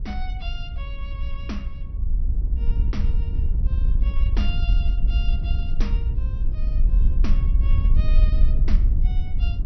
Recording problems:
treble cut off; nothing above 5.9 kHz
wind on the microphone; below 56 Hz, SNR -14 dB

